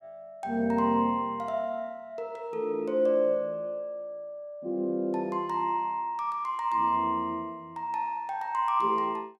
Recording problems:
none

